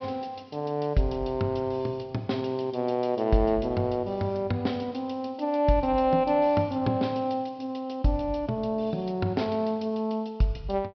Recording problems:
treble cut off; nothing above 5.5 kHz

